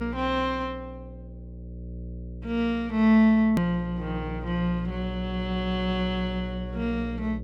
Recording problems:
hum; 60 Hz, harmonics up to 600 Hz, SNR 11 dB
click at an edit; at 3.5 s

